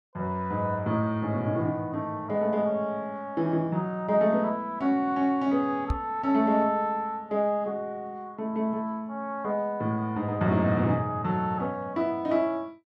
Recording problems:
knock on the microphone; at 6 s; peak +3 dB vs average level

